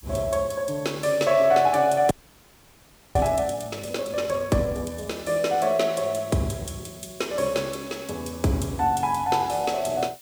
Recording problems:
hiss; slope +2 dB per octave, SNR 23 dB
frozen audio; at 2 s for 1 s

